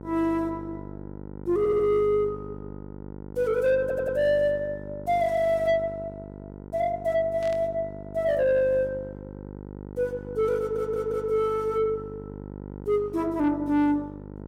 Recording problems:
distorted audio; soft clipping, signal-to-distortion ratio 12 dB
hum; 50 Hz, harmonics up to 1.1 kHz, SNR 14 dB
stutter; at 1.5 s, at 4 s and at 11 s
static burst; at 7.5 s; peak -15 dB vs average level

